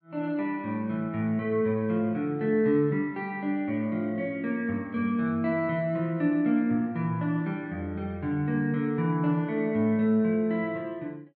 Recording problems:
none

